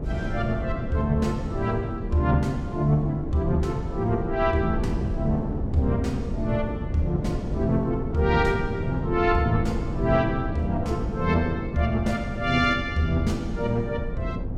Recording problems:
wind on the microphone; below 210 Hz, SNR 6 dB

